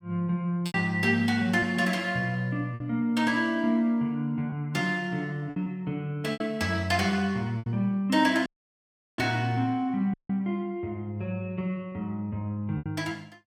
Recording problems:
packet loss; 4% of the sound replaced, filled with repeated pitch periods
dropout; at 8.5 s for 0.5 s and at 10 s

